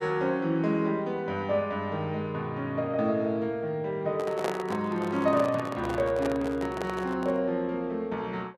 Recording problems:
handling noise; from 4 to 7.5 s; peak +1 dB vs average level

